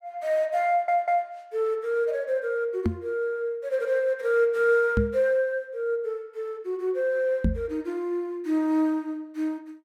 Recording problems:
stutter; at 0.5 s
microphone bump; at 3 s, at 5 s and at 7.5 s; peak +5 dB vs average level

